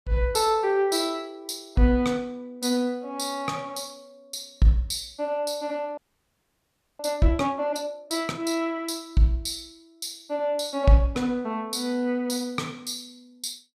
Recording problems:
audio freezing; at 6 s for 1 s

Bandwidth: 14.5 kHz